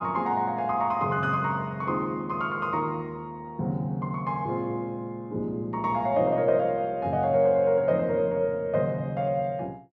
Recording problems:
none

